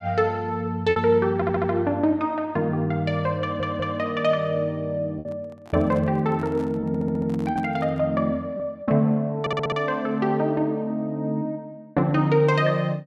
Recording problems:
packet loss; 2% of the sound replaced, filled with repeated pitch periods
stutter; 4 times, first at 1.5 s
microphone handling noise; from 5 to 8 s; peak -12 dB vs average level

